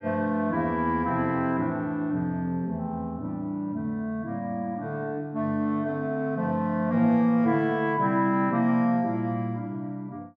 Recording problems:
none

